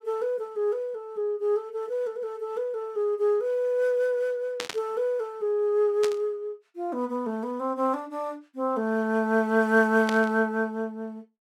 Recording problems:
burst of static; at 4.5 s, at 6 s and at 10 s; peak -1 dB vs average level

